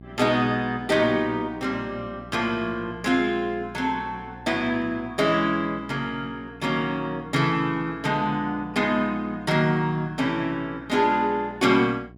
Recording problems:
hum; 60 Hz, harmonics up to 780 Hz, SNR 20 dB

